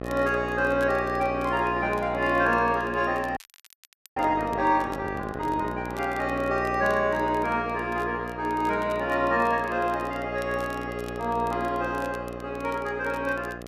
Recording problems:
hum; 60 Hz, harmonics up to 2 kHz, SNR 9 dB
crackle; vinyl, SNR 26 dB
frozen audio; at 3.5 s for 1 s

